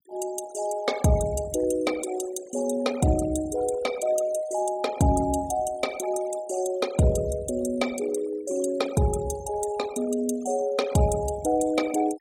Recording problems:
noise reduction artefacts; signal-to-artefact ratio 15 dB

